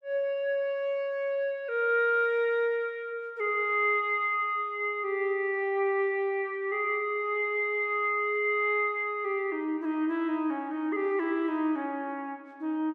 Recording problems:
none

